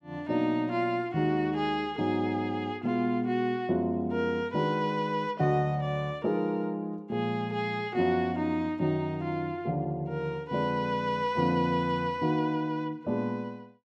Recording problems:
none

